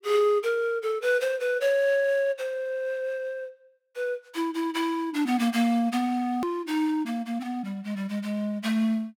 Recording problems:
edit click; at 6.5 s

